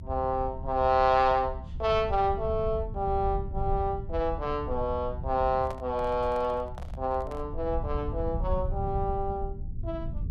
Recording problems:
low-frequency rumble; below 94 Hz, SNR 8 dB
microphone handling noise; from 5.5 to 7.5 s; peak -8 dB vs average level

